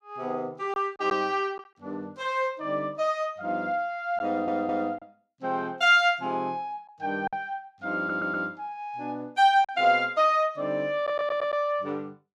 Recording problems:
packet loss; 2% of the sound replaced, filled with silence
audio stuttering; at 4.5 s, at 8 s and at 11 s

